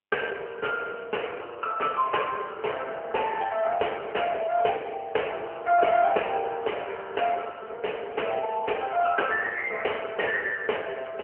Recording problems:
phone line; 370 Hz to 3.1 kHz, AMR-NB

